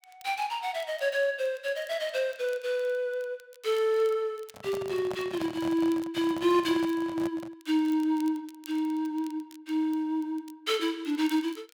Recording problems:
crackle; vinyl, SNR 25 dB
handling noise; from 4.5 to 7.5 s; peak -5 dB vs average level

